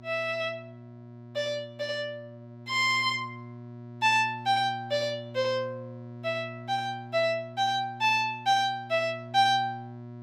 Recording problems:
hum; 60 Hz, harmonics up to 960 Hz, SNR 16 dB

